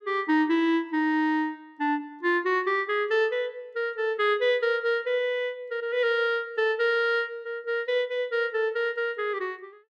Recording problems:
none

